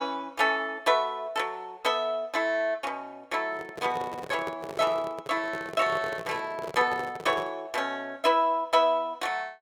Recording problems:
microphone handling noise; from 3.5 to 7.5 s; peak -5 dB vs average level

